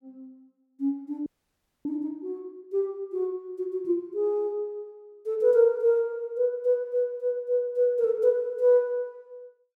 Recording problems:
frozen audio; at 1.5 s for 0.5 s

